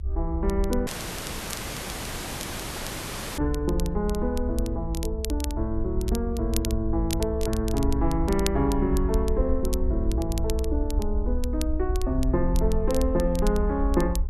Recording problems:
rumble; below 66 Hz, SNR 2 dB
crackling; vinyl, SNR 13 dB
dropout; at 1 s for 2.5 s

